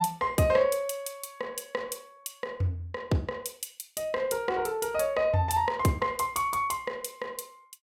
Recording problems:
none

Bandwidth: 17 kHz